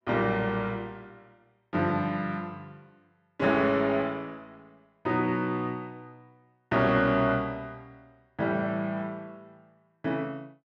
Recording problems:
none

